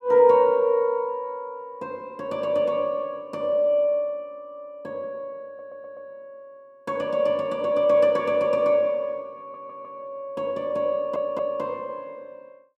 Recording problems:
stutter; at 5.5 s, at 9.5 s and at 11 s

